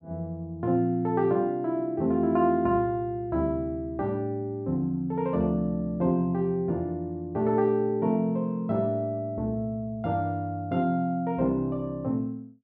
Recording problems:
none

